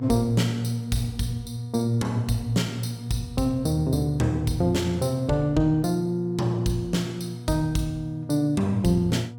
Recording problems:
hum; 60 Hz, harmonics up to 960 Hz, SNR 12 dB

